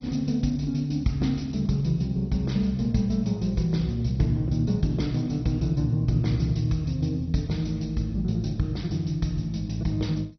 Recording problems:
lossy compression; MP2, log-spectral distance 2 dB, nothing above 6 kHz

